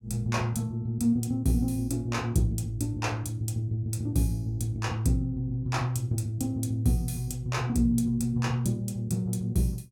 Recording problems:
none

